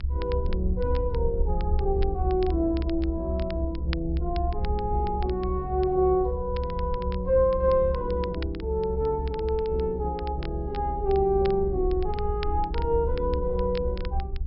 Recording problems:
treble missing; nothing above 5.4 kHz
rumble; below 70 Hz, SNR 4 dB
crackle; vinyl, SNR 21 dB

